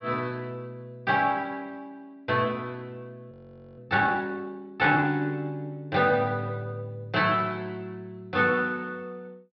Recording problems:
treble missing; nothing above 5.5 kHz
audio freezing; at 3.5 s

